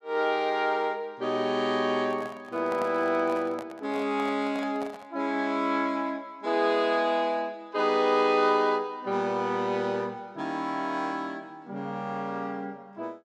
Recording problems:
microphone handling noise; from 2 to 5 s; peak -6 dB vs average level

